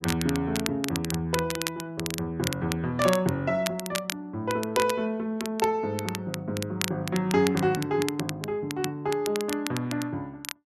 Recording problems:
crackle; vinyl, SNR 7 dB

